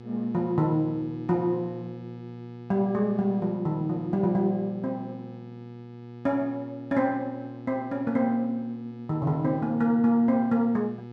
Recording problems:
hum; 60 Hz, harmonics up to 1.7 kHz, SNR 15 dB

